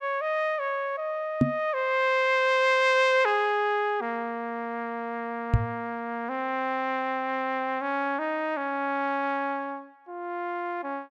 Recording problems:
knock on the microphone; at 1.5 s and at 5.5 s; peak +9 dB vs average level

